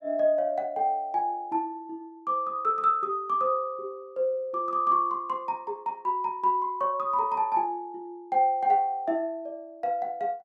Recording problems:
none

